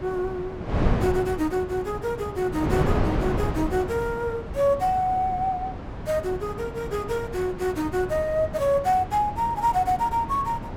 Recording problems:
wind noise; below 480 Hz, SNR 6 dB

